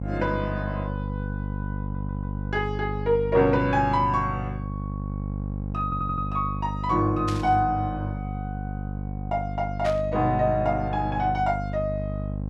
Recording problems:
electrical hum; 50 Hz, harmonics up to 800 Hz, SNR 6 dB
stutter; at 2 s and at 6 s
static burst; at 7.5 s and at 10 s; peak -6 dB vs average level

